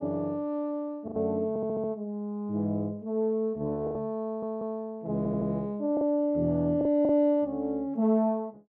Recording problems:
lost packets; 4% of the sound replaced, filled with the last packet
audio stuttering; at 1.5 s, at 4 s and at 5 s

